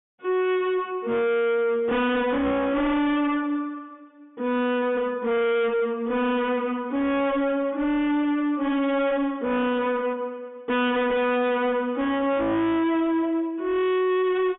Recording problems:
low-pass filter; nothing above 3.6 kHz
distorted audio; hard clipping, uneven, signal-to-distortion ratio 7 dB

